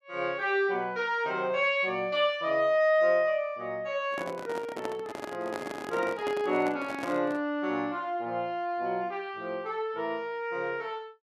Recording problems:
microphone handling noise; from 4 to 7.5 s; peak -3 dB vs average level

